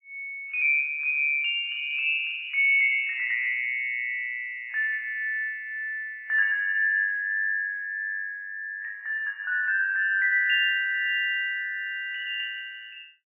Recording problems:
lossy codec; MP3, log-spectral distance 3 dB, nothing above 2.5 kHz

